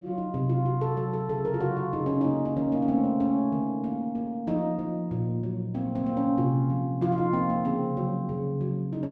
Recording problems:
none

